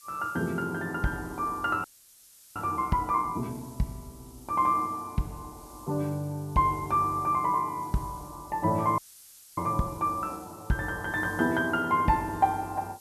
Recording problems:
background hiss; slope +6 dB per octave, SNR 22 dB
audio freezing; at 2 s for 0.5 s and at 9 s for 0.5 s

